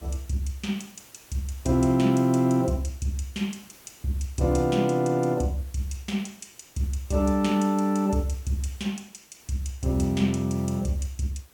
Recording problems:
hiss; slope -3 dB per octave, SNR 25 dB

